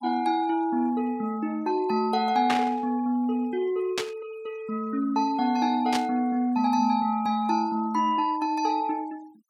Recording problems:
denoising artefacts; signal-to-artefact ratio 24 dB
static burst; at 2.5 s, at 4 s and at 6 s; peak +2 dB vs average level

